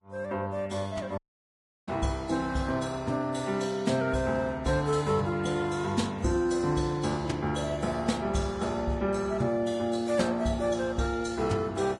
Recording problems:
lossy codec; Vorbis, log-spectral distance 3 dB, nothing above 10.1 kHz
audio cutting out; at 1 s for 0.5 s

